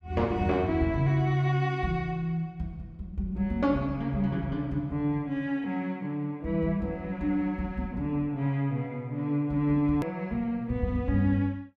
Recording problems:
hard cut with a click; at 10 s

